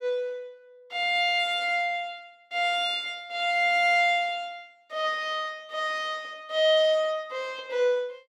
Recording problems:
none

